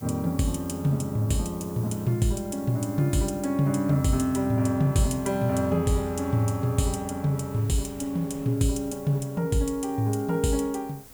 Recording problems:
hiss; SNR 21 dB
wind noise; below 1.1 kHz, SNR 27 dB

